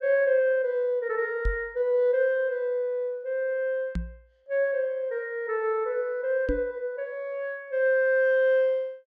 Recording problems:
knock on the microphone; at 1.5 s, at 4 s and at 6.5 s; peak 0 dB vs average level

